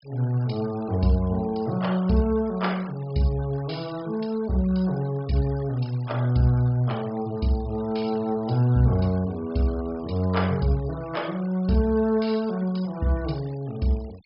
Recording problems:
low-pass filter; nothing above 5.5 kHz
denoising artefacts; signal-to-artefact ratio 23 dB

